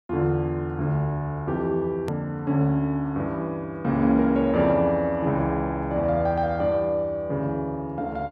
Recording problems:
edit click; at 2 s

